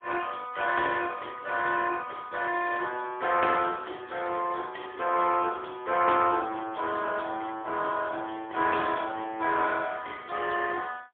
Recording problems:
telephone audio; 260 Hz to 2.9 kHz, AMR-NB, then MP3

